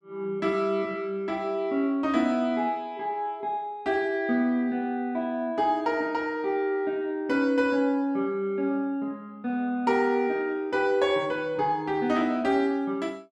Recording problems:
none

